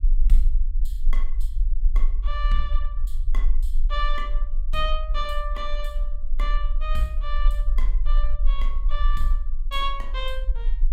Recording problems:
rumble; below 38 Hz, strongest tone 20 Hz, SNR -5 dB

